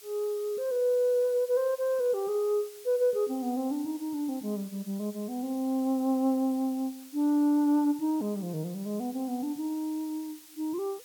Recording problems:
hiss; slope +2 dB per octave, SNR 20 dB

